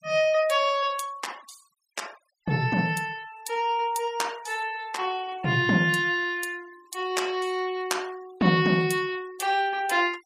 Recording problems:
noise reduction artefacts; signal-to-artefact ratio 24 dB

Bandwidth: 15.5 kHz